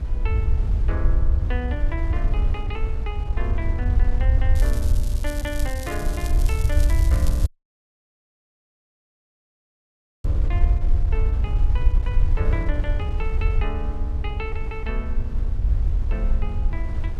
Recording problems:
rumble; below 70 Hz, SNR -10 dB
wind on the microphone; below 180 Hz, SNR 4 dB
crackling; from 4.5 to 10 s; loose cable, SNR 6 dB
audio cutting out; at 7.5 s for 3 s

